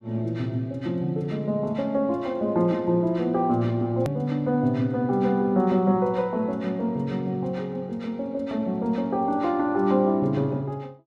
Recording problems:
click at an edit; at 4 s

